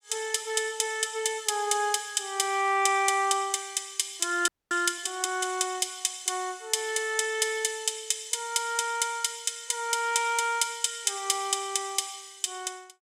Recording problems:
frozen audio; at 4.5 s

